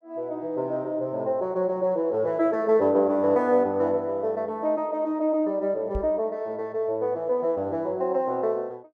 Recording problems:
microphone bump; at 6 s; peak -3 dB vs average level

